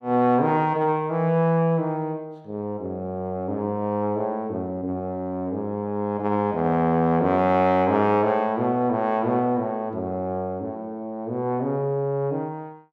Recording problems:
none

